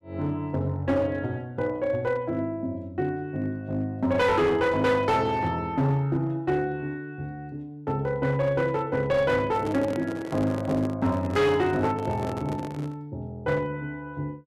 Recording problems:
distorted audio; hard clipping, uneven, signal-to-distortion ratio 11 dB
microphone handling noise; from 9.5 to 13 s; peak -4 dB vs average level

